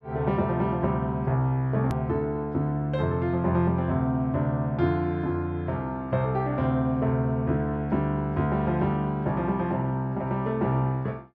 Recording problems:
edit click; at 2 s

